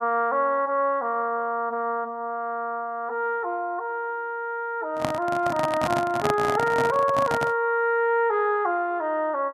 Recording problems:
handling noise; from 5 to 7.5 s; peak +2 dB vs average level

